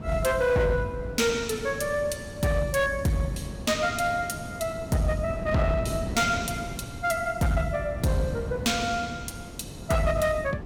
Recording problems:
distorted audio; hard clipping, signal-to-distortion ratio 11 dB
wind on the microphone; below 330 Hz, SNR 11 dB

